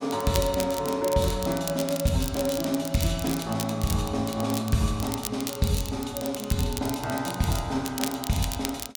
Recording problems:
crackle; vinyl, SNR 9 dB

